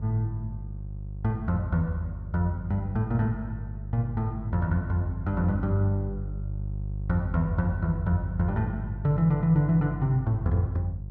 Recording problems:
hum; 50 Hz, harmonics up to 350 Hz, SNR 8 dB

